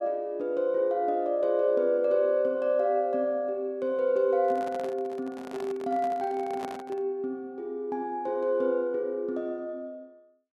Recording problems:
microphone handling noise; from 4.5 to 7 s; peak -6 dB vs average level

